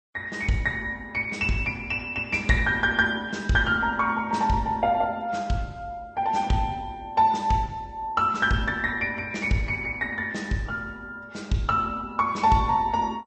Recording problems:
codec artefacts; MP2, then Vorbis, log-spectral distance 2 dB, nothing above 8.2 kHz

